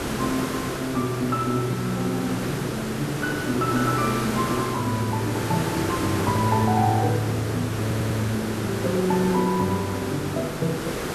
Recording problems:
hiss; slope -6 dB per octave, SNR 4 dB
audio stuttering; at 8 s

